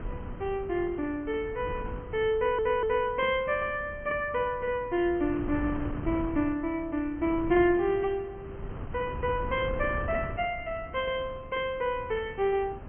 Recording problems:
low-pass filter; nothing above 3.2 kHz
wind noise; below 260 Hz, SNR 12 dB
audio stuttering; at 2.5 s

